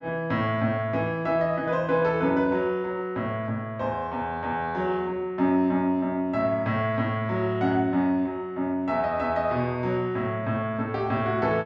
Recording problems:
treble missing; nothing above 8 kHz

